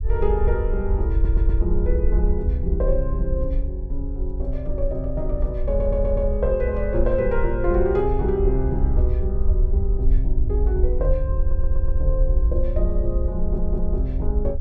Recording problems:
rumble; below 62 Hz, SNR -2 dB
stutter; 4 times, first at 1 s

